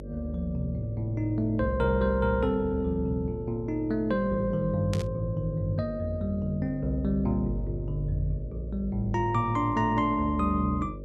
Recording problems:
mains hum; 50 Hz, harmonics up to 600 Hz, SNR 13 dB
static burst; at 5 s; peak -5 dB vs average level

